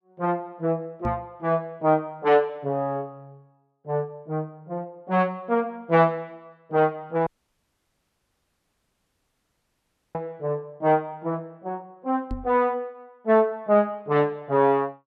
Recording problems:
knock on the microphone; at 1 s and at 12 s; peak -1 dB vs average level
dropout; at 7.5 s for 3 s

